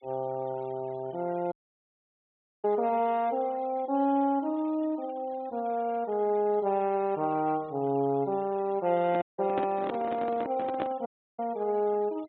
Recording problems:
treble cut off; nothing above 4 kHz
denoising artefacts; signal-to-artefact ratio 26 dB
audio cutting out; at 1.5 s for 1 s, at 9 s and at 11 s
handling noise; from 9 to 11 s; peak -1 dB vs average level

